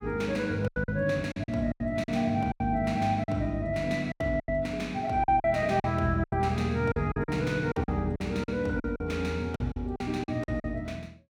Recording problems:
packet loss; 13% of the sound replaced, filled with silence

